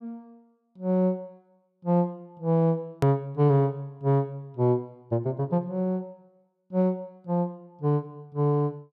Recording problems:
edit click; at 3 s

